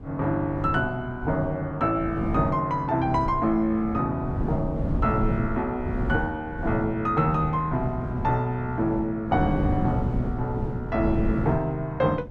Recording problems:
wind noise; below 220 Hz, SNR 6 dB

